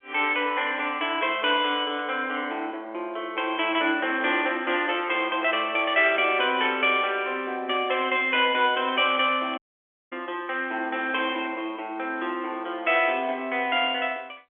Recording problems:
phone line; 280 Hz to 3.5 kHz, G.711
static burst; at 2 s, at 9.5 s and at 13 s; peak -14 dB vs average level
audio cutting out; at 9.5 s for 0.5 s

